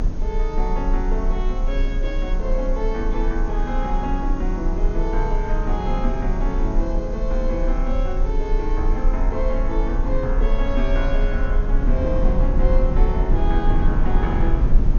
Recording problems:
lossy codec; MP2, log-spectral distance 2 dB, nothing above 6.5 kHz
hiss; slope +3 dB per octave, SNR 27 dB
low-frequency rumble; below 34 Hz, strongest tone 30 Hz, SNR -2 dB
wind on the microphone; below 210 Hz, SNR 3 dB

